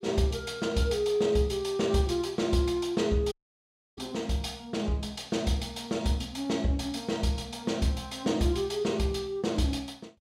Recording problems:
audio cutting out; at 3.5 s for 0.5 s

